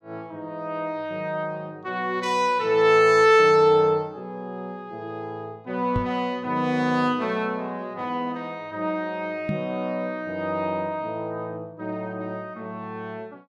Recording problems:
knock on the microphone; at 6 s and at 9.5 s; peak 0 dB vs average level

